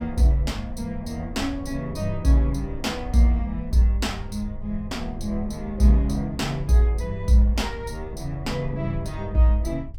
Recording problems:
rumble; below 68 Hz, SNR 14 dB

